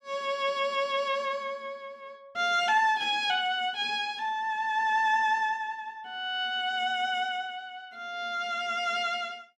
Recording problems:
none

